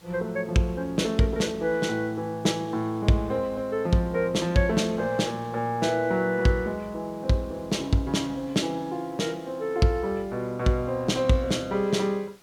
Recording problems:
hiss; slope -2 dB per octave, SNR 28 dB

